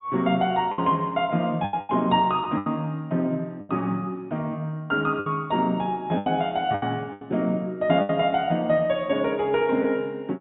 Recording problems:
treble cut off; nothing above 4 kHz
lost packets; 7% of the sound replaced, filled with the last packet

